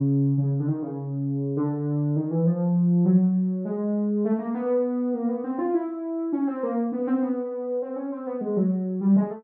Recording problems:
none

